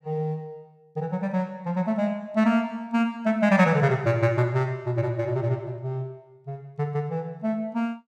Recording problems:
none

